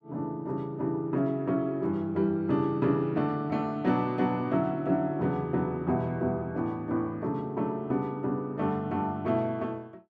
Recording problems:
none

